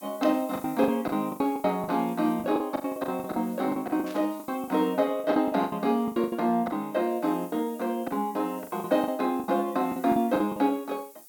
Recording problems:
background hiss; SNR 21 dB
lost packets; 17% of the sound replaced, filled with the last packet
burst of static; at 4 s; peak -14 dB vs average level

